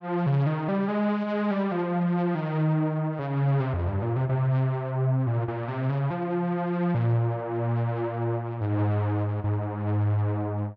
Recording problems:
none

